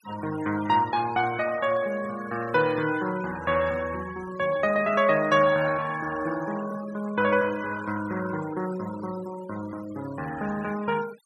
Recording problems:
noise reduction artefacts; signal-to-artefact ratio 16 dB

